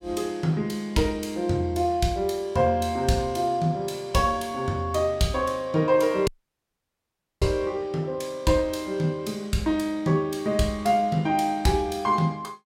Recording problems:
dropout; at 6.5 s for 1 s

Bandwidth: 16 kHz